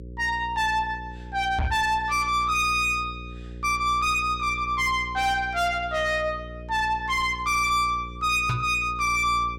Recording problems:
distortion; soft clipping, signal-to-distortion ratio 8 dB
hum; 60 Hz, harmonics up to 540 Hz, SNR 16 dB
knock on the microphone; at 1.5 s and at 8.5 s; peak +2 dB vs average level

